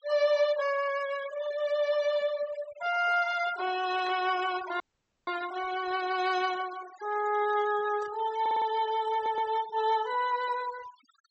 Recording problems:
treble missing; nothing above 7.9 kHz
noise reduction artefacts; signal-to-artefact ratio 16 dB
burst of static; at 4 s and at 8 s; peak -15 dB vs average level
audio cutting out; at 5 s
audio stuttering; at 8.5 s and at 9 s

